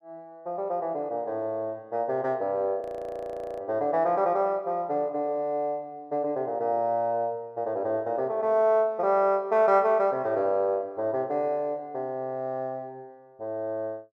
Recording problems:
audio freezing; at 3 s for 1 s

